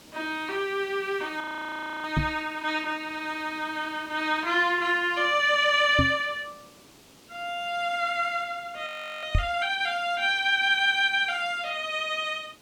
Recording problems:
hiss; SNR 26 dB
audio freezing; at 1.5 s for 0.5 s and at 9 s
microphone bump; at 2 s, at 6 s and at 9.5 s; peak +5 dB vs average level

